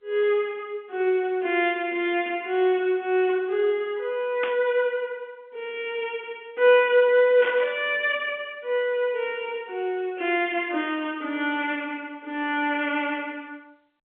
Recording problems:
phone line; 220 Hz to 3.4 kHz, G.711
burst of static; at 4.5 s and at 7.5 s; peak -3 dB vs average level

